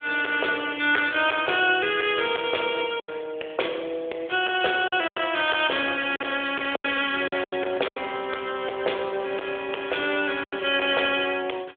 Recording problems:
telephone audio; 340 Hz to 3.5 kHz, AMR-NB
distortion; soft clipping, signal-to-distortion ratio 12 dB
lost packets; 5% of the sound replaced, filled with silence

